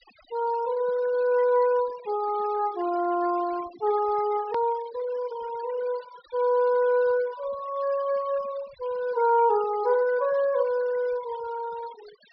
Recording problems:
treble cut off; nothing above 5.5 kHz
noise reduction artefacts; signal-to-artefact ratio 20 dB
hard cut with a click; at 4.5 s

